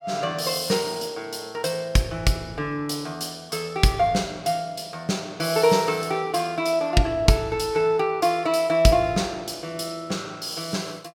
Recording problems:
none

